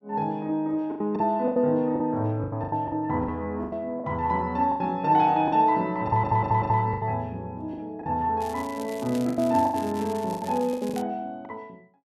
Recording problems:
lost packets; 12% of the sound replaced, filled with the last packet
stutter; at 6 s
crackle; from 8.5 to 11 s; loose cable, SNR 20 dB

